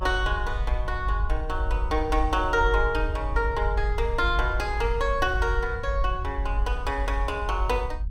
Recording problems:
low-frequency rumble; below 56 Hz, strongest tone 46 Hz, SNR 2 dB

